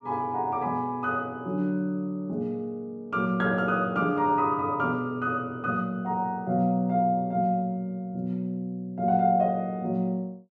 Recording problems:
none

